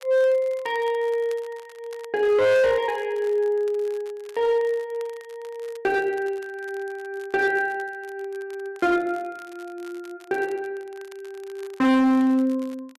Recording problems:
distortion; hard clipping, uneven, signal-to-distortion ratio 7 dB
crackle; vinyl, SNR 27 dB

